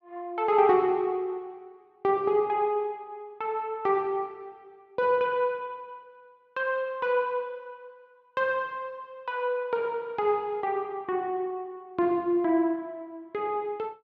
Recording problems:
none

